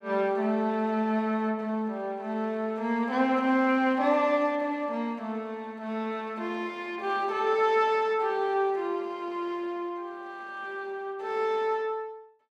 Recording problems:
none

